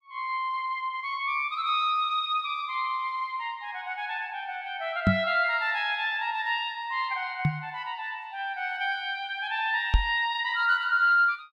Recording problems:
knock on the microphone; at 5 s, at 7.5 s and at 10 s; peak +8 dB vs average level

